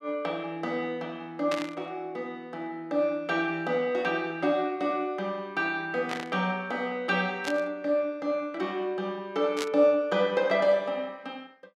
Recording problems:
burst of static; 4 times, first at 1.5 s; peak -1 dB vs average level

